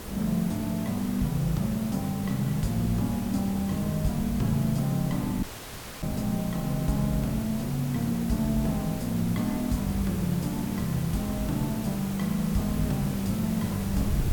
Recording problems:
hiss; slope -5 dB per octave, SNR 11 dB
wind on the microphone; below 110 Hz, SNR 15 dB
dropout; at 5.5 s for 0.5 s

